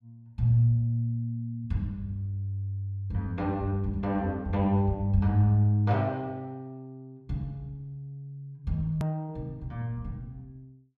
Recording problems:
click at an edit; at 9 s

